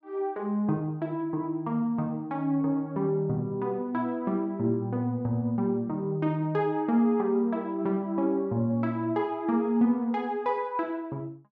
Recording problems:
none

